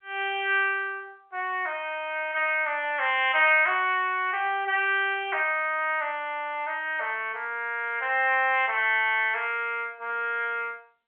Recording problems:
phone line; 280 Hz to 3.3 kHz, G.711

